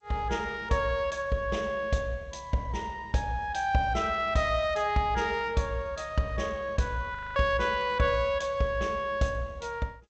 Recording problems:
lossy compression; G.722, log-spectral distance 2 dB
audio freezing; at 7 s

